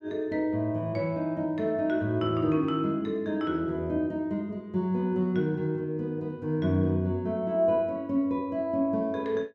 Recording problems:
none

